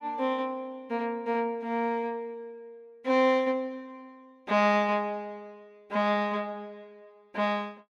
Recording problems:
none

